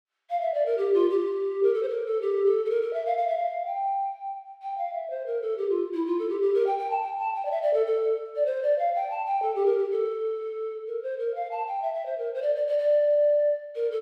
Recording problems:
none

